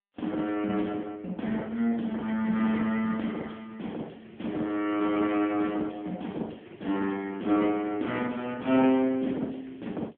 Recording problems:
telephone audio; 190 Hz to 3.4 kHz, AMR-NB

